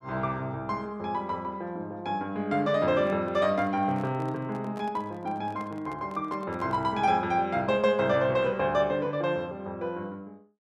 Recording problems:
microphone handling noise; from 3 to 7 s; peak -13 dB vs average level

